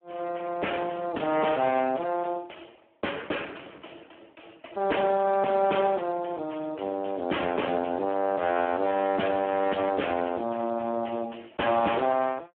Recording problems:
telephone audio; 190 Hz to 3.3 kHz, Speex
distorted audio; soft clipping, signal-to-distortion ratio 10 dB

